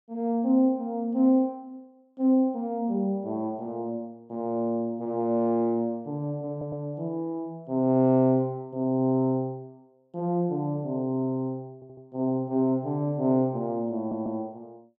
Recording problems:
audio stuttering; at 6.5 s, at 12 s and at 14 s

